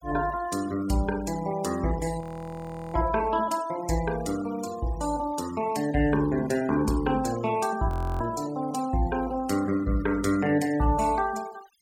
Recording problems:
denoising artefacts; signal-to-artefact ratio 18 dB
audio freezing; at 2 s for 0.5 s and at 8 s

